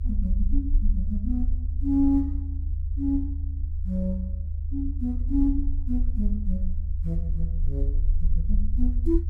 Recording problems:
rumble; below 74 Hz, SNR -1 dB

